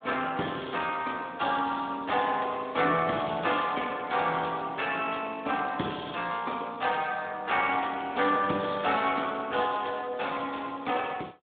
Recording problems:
telephone audio; 220 Hz to 3.6 kHz, Speex

